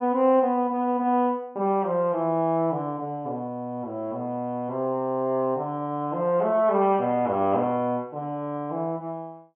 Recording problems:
treble cut off; nothing above 3.3 kHz

